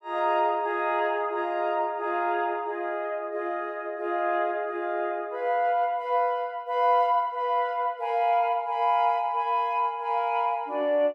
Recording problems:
none

